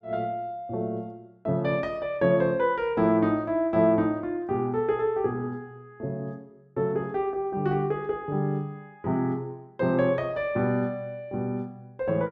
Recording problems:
none

